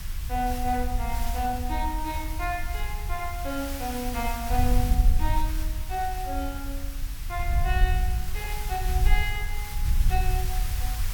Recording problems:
background hiss; slope +1 dB per octave, SNR 7 dB
wind noise; below 64 Hz, SNR -2 dB

